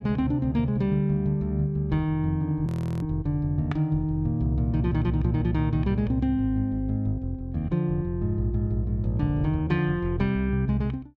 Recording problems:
audio freezing; at 2.5 s

